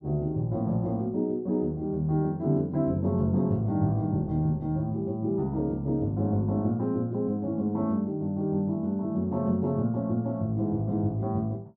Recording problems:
none

